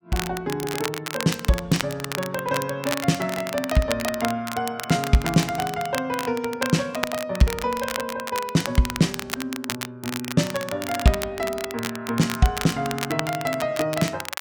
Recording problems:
crackle; vinyl, SNR 7 dB

